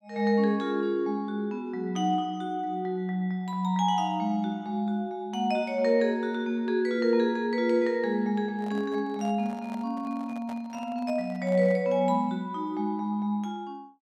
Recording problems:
microphone handling noise; from 8.5 to 12 s; peak -11 dB vs average level

